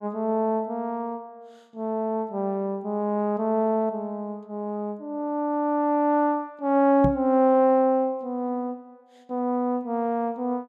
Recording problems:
microphone thump; at 7 s; peak +3 dB vs average level

